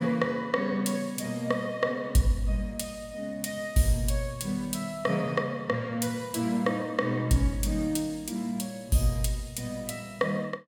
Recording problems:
none

